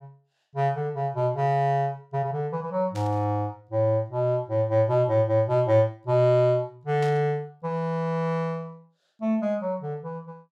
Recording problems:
static burst; at 3 s and at 7 s; peak -11 dB vs average level

